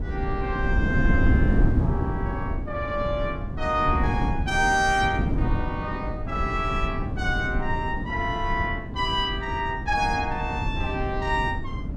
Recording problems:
wind on the microphone; below 190 Hz, SNR 1 dB

